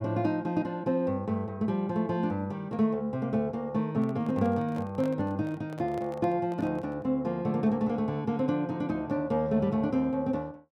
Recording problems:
handling noise; from 4 to 7 s; peak -10 dB vs average level

